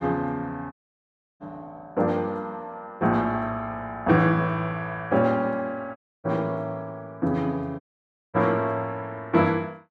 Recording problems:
audio cutting out; at 0.5 s for 0.5 s, at 6 s and at 8 s for 0.5 s

